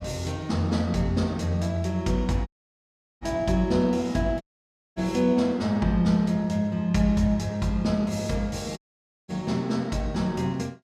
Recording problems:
dropout; at 2.5 s for 0.5 s, at 4.5 s for 0.5 s and at 9 s for 0.5 s

